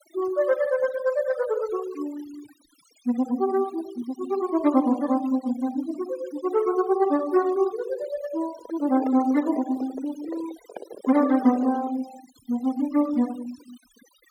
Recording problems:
noise reduction artefacts; signal-to-artefact ratio 18 dB
handling noise; from 8.5 to 12 s; peak -4 dB vs average level

